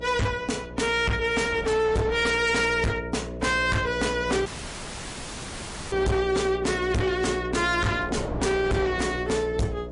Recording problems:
lossy codec; MP3, log-spectral distance 4 dB, nothing above 10.4 kHz
distorted audio; hard clipping, uneven, signal-to-distortion ratio 5 dB
hum; 60 Hz, harmonics up to 660 Hz, SNR 11 dB
wind noise; below 670 Hz, SNR 15 dB
audio cutting out; at 4.5 s for 1.5 s

